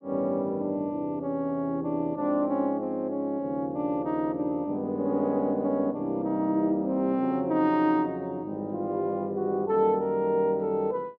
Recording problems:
none

